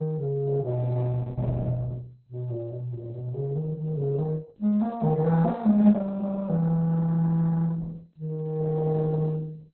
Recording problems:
codec artefacts; Opus, then MP2, log-spectral distance 2 dB, nothing above 4 kHz

